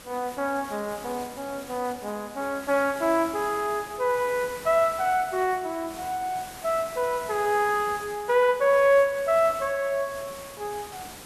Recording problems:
hiss; slope -3 dB per octave, SNR 16 dB

